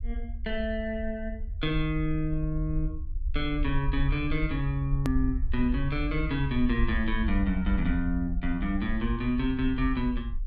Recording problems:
low-frequency rumble; below 58 Hz, SNR 4 dB
hard cut with a click; at 5 s

